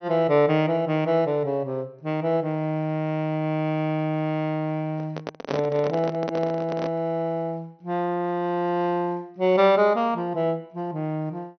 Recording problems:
treble cut off; nothing above 6.1 kHz
microphone handling noise; from 5 to 7 s; peak 0 dB vs average level

